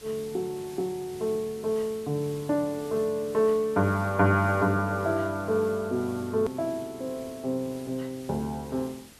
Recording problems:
background hiss; SNR 20 dB
edit click; at 6.5 s

